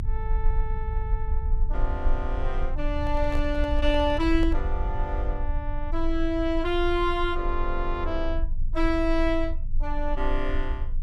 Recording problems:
rumble; below 46 Hz, strongest tone 22 Hz, SNR 2 dB
microphone handling noise; from 3 to 4.5 s; peak -7 dB vs average level

